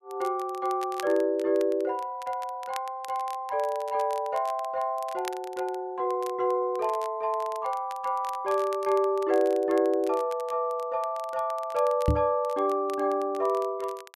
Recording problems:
crackle; vinyl, SNR 21 dB
microphone thump; at 12 s; peak +7 dB vs average level

